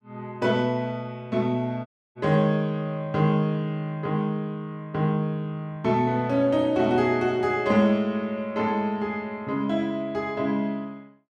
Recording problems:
dropout; at 2 s

